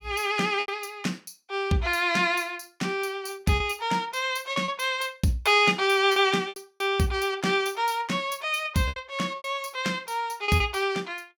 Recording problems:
packet loss; 6% of the sound replaced, filled with repeated pitch periods

